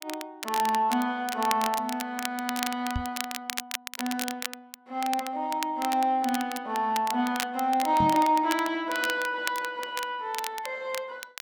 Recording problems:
crackling; vinyl, SNR 9 dB
microphone bump; at 3 s and at 8 s; peak +1 dB vs average level

